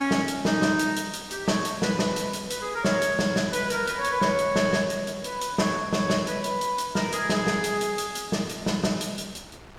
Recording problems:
wind on the microphone; below 1.8 kHz, SNR 23 dB

